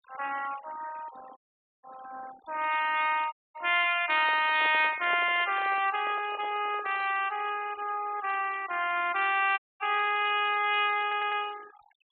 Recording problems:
treble cut off; nothing above 4 kHz
noise reduction artefacts; signal-to-artefact ratio 19 dB
audio cutting out; at 1.5 s, at 3.5 s and at 9.5 s
microphone handling noise; from 4 to 7.5 s; peak -10 dB vs average level
stutter; at 11 s

